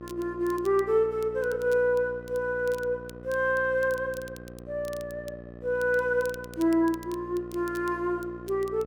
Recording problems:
electrical hum; 60 Hz, harmonics up to 1.4 kHz, SNR 16 dB
crackling; vinyl, SNR 24 dB

